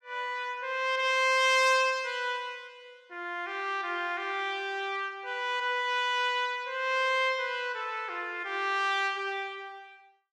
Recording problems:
none

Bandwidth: 14.5 kHz